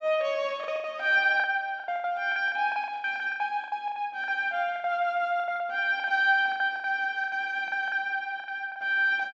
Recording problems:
treble missing; nothing above 8 kHz
packet loss; 17% of the sound replaced, filled with the last packet

